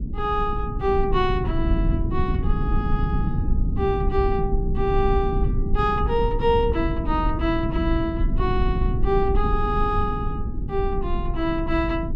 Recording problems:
rumble; below 110 Hz, SNR 1 dB

